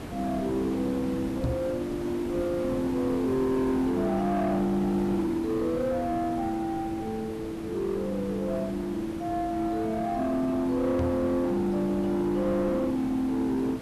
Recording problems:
distortion; soft clipping, signal-to-distortion ratio 10 dB
hiss; slope -7 dB per octave, SNR 11 dB
knock on the microphone; at 1.5 s and at 11 s; peak +4 dB vs average level

